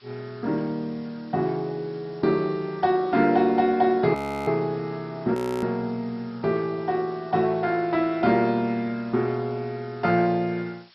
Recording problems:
codec artefacts; MP2, log-spectral distance 5 dB, nothing above 13.1 kHz
background hiss; slope +3 dB per octave, SNR 29 dB
audio freezing; at 4 s and at 5.5 s

